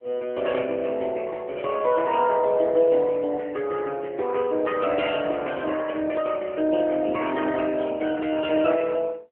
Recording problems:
phone line; 170 Hz to 2.8 kHz, AMR-NB

